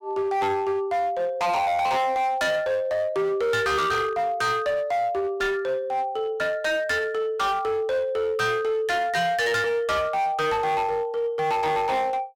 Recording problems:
distorted audio; hard clipping, uneven, signal-to-distortion ratio 8 dB

